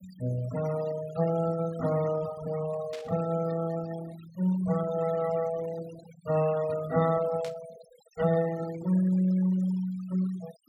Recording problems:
noise reduction artefacts; signal-to-artefact ratio 15 dB
static burst; at 3 s and at 7.5 s; peak -10 dB vs average level

